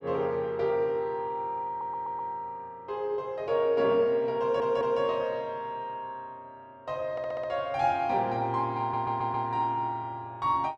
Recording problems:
audio stuttering; 4 times, first at 1.5 s

